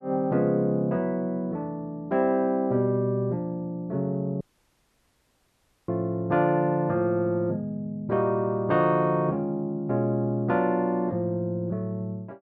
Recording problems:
dropout; at 4.5 s for 1.5 s

